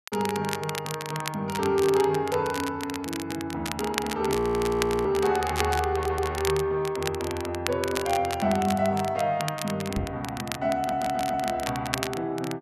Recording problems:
crackling; vinyl, SNR 9 dB
audio freezing; at 4.5 s for 0.5 s
audio stuttering; at 6 s and at 11 s
microphone bump; at 10 s; peak -1 dB vs average level

